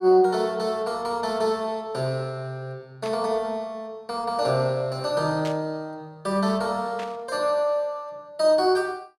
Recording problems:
static burst; at 3 s, at 5.5 s and at 7 s; peak -8 dB vs average level

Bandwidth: 15 kHz